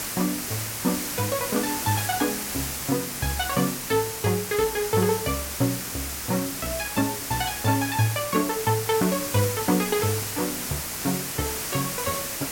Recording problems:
background hiss; slope -1 dB per octave, SNR 3 dB

